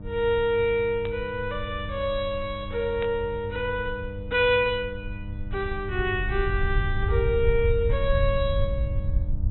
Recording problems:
treble missing; nothing above 3.9 kHz
electrical hum; 50 Hz, harmonics up to 900 Hz, SNR 13 dB
rumble; below 86 Hz, SNR 5 dB
static burst; at 1 s and at 3 s; peak -8 dB vs average level

